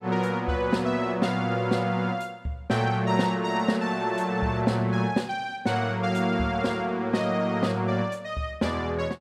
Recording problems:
none

